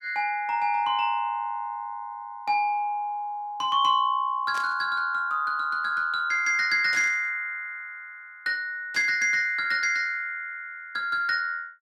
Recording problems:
burst of static; at 4.5 s, at 7 s and at 9 s; peak -9 dB vs average level

